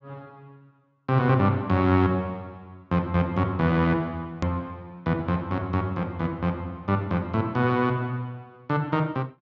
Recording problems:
treble cut off; nothing above 8 kHz
edit click; at 4.5 s

